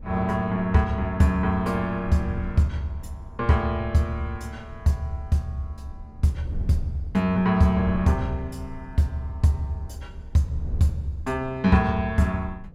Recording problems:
wind noise; below 90 Hz, SNR 16 dB

